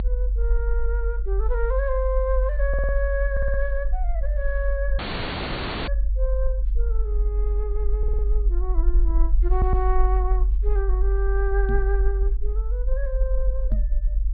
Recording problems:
low-pass filter; nothing above 4.6 kHz
rumble; below 48 Hz, strongest tone 46 Hz, SNR -6 dB
stutter; 4 times, first at 2.5 s
audio cutting out; at 5 s for 1 s
microphone thump; at 12 s and at 14 s; peak +3 dB vs average level

